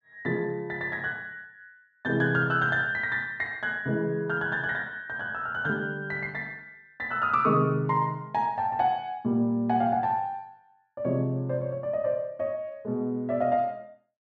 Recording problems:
none

